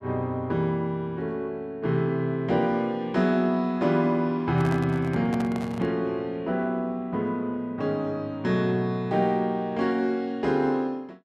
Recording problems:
microphone handling noise; from 4.5 to 6 s; peak -5 dB vs average level

